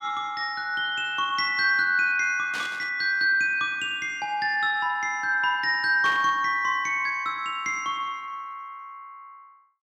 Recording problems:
static burst; at 2.5 s and at 6 s; peak -7 dB vs average level

